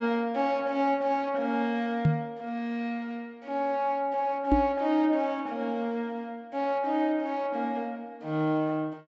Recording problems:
low-pass filter; nothing above 8 kHz
knock on the microphone; at 2 s and at 4.5 s; peak +8 dB vs average level

